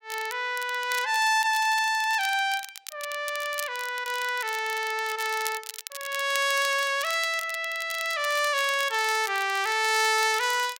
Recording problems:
crackling; vinyl, SNR 14 dB

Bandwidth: 16 kHz